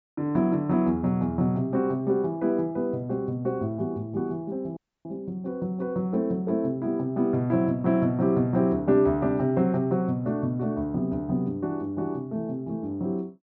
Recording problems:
treble cut off; nothing above 8 kHz
audio cutting out; at 5 s

